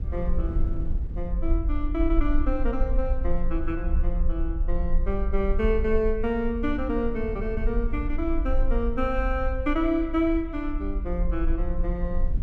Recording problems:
rumble; below 48 Hz, strongest tone 22 Hz, SNR 2 dB
wind noise; below 100 Hz, SNR 12 dB

